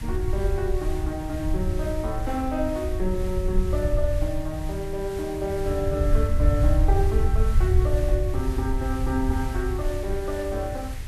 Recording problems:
hiss; SNR 15 dB
low-frequency rumble; below 78 Hz, SNR -1 dB

